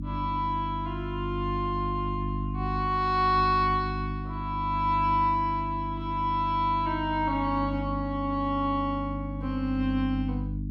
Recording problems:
hum; 50 Hz, harmonics up to 300 Hz, SNR 6 dB

